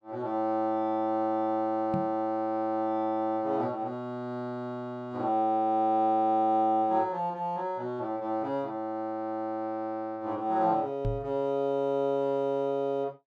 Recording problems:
microphone bump; at 2 s and at 11 s; peak +1 dB vs average level

